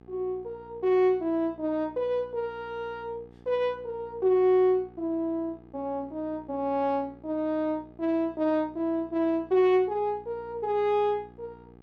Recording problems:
electrical hum; 60 Hz, harmonics up to 1.6 kHz, SNR 24 dB

